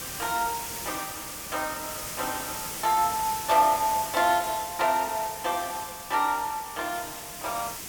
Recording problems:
background hiss; slope -1 dB per octave, SNR 7 dB

